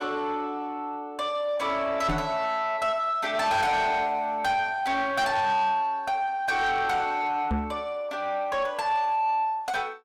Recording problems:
distorted audio; soft clipping, signal-to-distortion ratio 11 dB
microphone bump; at 2 s and at 7.5 s; peak +2 dB vs average level

